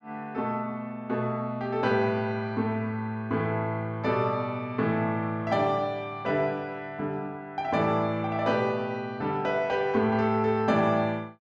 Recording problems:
none

